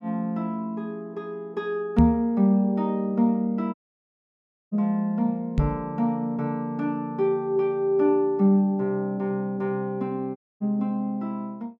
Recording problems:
microphone thump; at 2 s and at 5.5 s; peak +7 dB vs average level
dropout; at 3.5 s for 1 s and at 10 s

